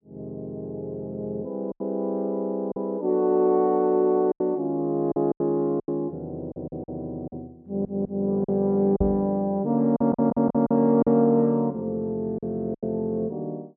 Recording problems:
packet loss; 7% of the sound replaced, filled with silence
audio stuttering; at 7.5 s and at 10 s
microphone bump; at 9 s; peak 0 dB vs average level

